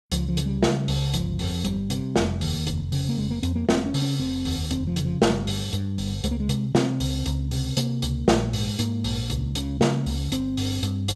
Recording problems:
none

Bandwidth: 15 kHz